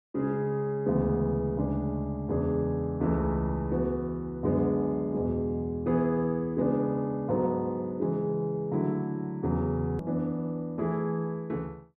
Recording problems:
click at an edit; at 10 s

